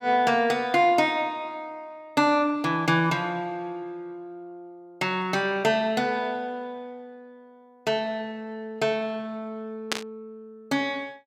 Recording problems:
burst of static; at 10 s; peak +4 dB vs average level

